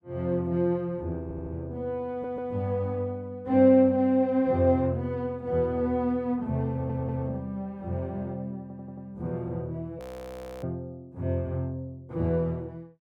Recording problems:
audio stuttering; 4 times, first at 1 s
audio freezing; at 10 s for 0.5 s

